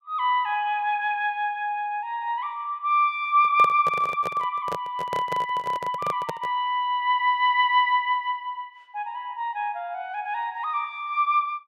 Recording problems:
handling noise; from 3.5 to 6.5 s; peak -4 dB vs average level

